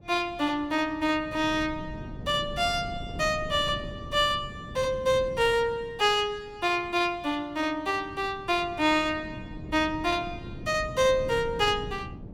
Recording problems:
wind on the microphone; below 240 Hz, SNR 14 dB

